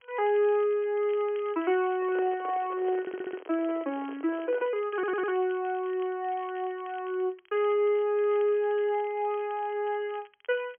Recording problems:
phone line; 280 Hz to 3.3 kHz, G.711
crackle; vinyl, SNR 28 dB
microphone handling noise; from 2 to 5 s; peak -5 dB vs average level
stutter; at 3 s and at 5 s

